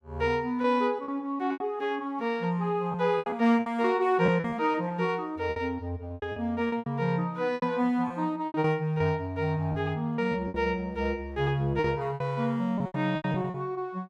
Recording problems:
lost packets; 11% of the sound replaced, filled with repeated pitch periods

